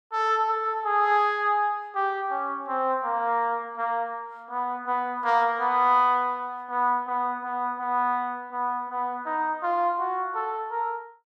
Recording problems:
none

